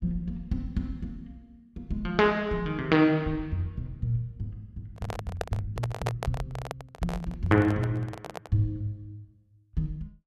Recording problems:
microphone handling noise; from 5 to 8.5 s; peak +2 dB vs average level

